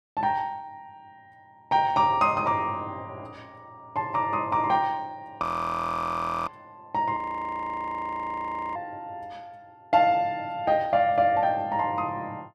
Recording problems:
audio freezing; at 5.5 s for 1 s and at 7 s for 1.5 s

